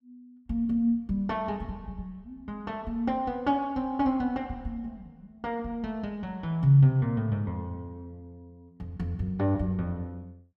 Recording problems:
none

